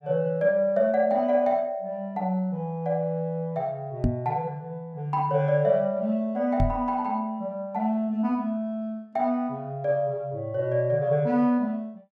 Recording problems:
knock on the microphone; at 4 s and at 6.5 s; peak +5 dB vs average level

